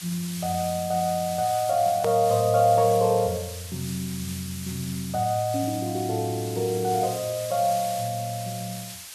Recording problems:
background hiss; slope +3 dB per octave, SNR 11 dB
click at an edit; at 2 s

